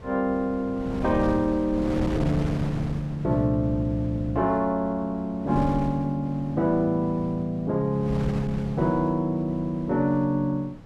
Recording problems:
wind on the microphone; below 330 Hz, SNR 11 dB

